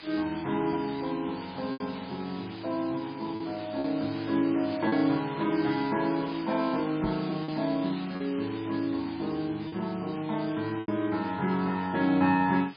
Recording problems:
lossy codec; MP3, log-spectral distance 12 dB
hiss; SNR 16 dB
lost packets; 3% of the sound replaced, filled with repeated pitch periods
microphone thump; at 7 s; peak -2 dB vs average level

